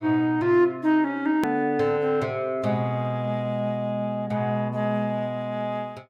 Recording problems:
edit click; at 1.5 s

